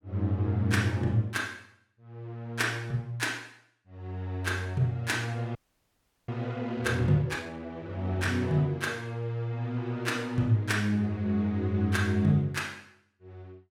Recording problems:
audio freezing; at 5.5 s for 0.5 s

